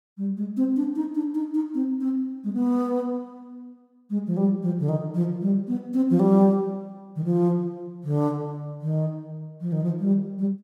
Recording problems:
none

